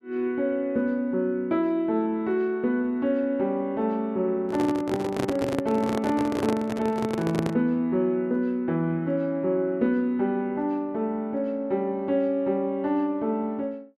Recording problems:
microphone handling noise; from 4.5 to 7.5 s; peak +1 dB vs average level

